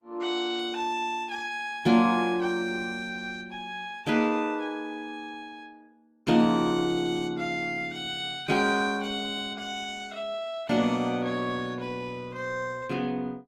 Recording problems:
lossy codec; Opus, log-spectral distance 3 dB, nothing above 18.3 kHz

